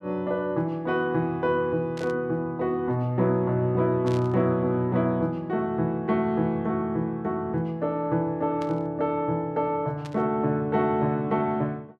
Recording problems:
static burst; 4 times, first at 2 s; peak -12 dB vs average level

